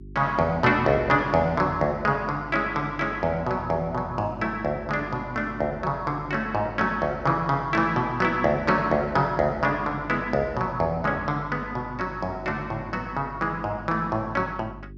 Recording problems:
electrical hum; 50 Hz, harmonics up to 400 Hz, SNR 18 dB

